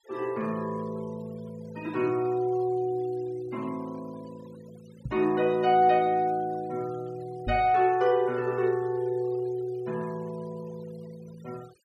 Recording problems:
denoising artefacts; signal-to-artefact ratio 25 dB
microphone thump; at 5 s and at 7.5 s; peak -2 dB vs average level

